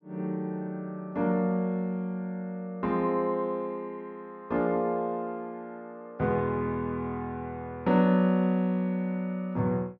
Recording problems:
treble cut off; nothing above 6.7 kHz

